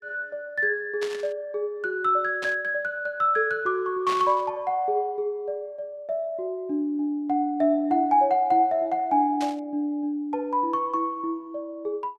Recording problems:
static burst; 4 times, first at 1 s; peak -5 dB vs average level

